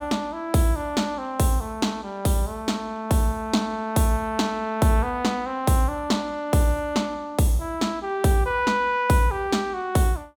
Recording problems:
none

